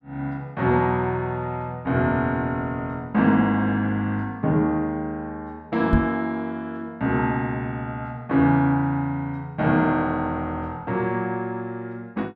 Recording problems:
knock on the microphone; at 6 s; peak +6 dB vs average level

